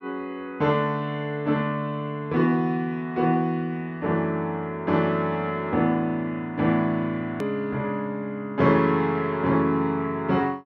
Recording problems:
click at an edit; at 7.5 s

